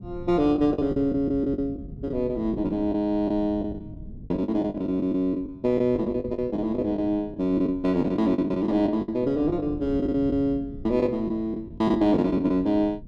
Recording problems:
low-frequency rumble; below 190 Hz, SNR 17 dB
packet loss; 13% of the sound replaced, filled with the last packet

